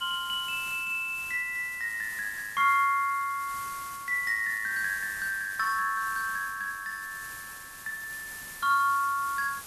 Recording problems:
hiss; slope 0 dB per octave, SNR 14 dB

